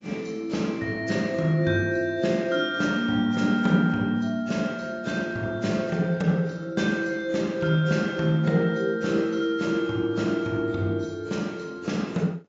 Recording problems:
lossy codec; AAC, log-spectral distance 2 dB, nothing above 7.3 kHz

